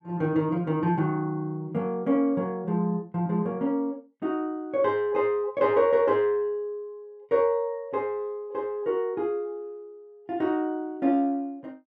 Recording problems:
none

